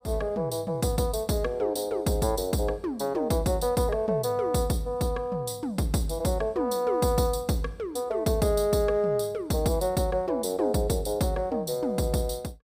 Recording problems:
none

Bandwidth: 15.5 kHz